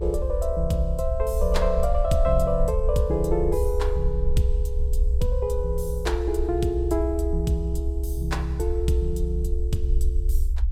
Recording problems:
rumble; below 64 Hz, SNR 1 dB

